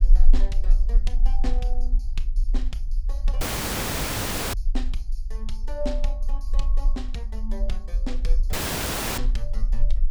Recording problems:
low-frequency rumble; below 36 Hz, strongest tone 20 Hz, SNR -10 dB
dropout; at 3.5 s for 1 s and at 8.5 s for 0.5 s

